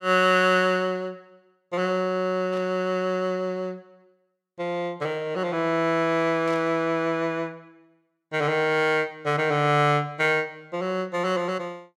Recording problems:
burst of static; at 2.5 s and at 6.5 s; peak -14 dB vs average level

